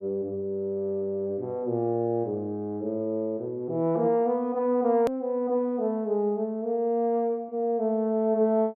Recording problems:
hard cut with a click; at 5 s

